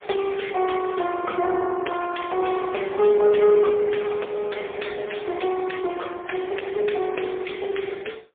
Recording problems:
phone line; 320 Hz to 3.4 kHz, AMR-NB, then MP3
distorted audio; soft clipping, signal-to-distortion ratio 11 dB

